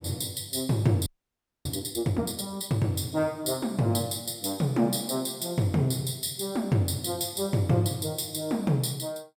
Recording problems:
frozen audio; at 1 s for 0.5 s

